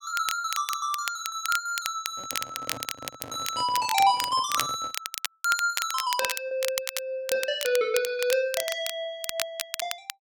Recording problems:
crackle; vinyl, SNR 5 dB
packet loss; 1.8% of the sound replaced, filled with repeated pitch periods
microphone handling noise; from 2 to 5 s; peak -8 dB vs average level

